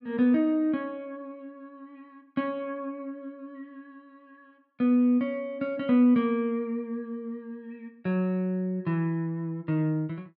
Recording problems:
none

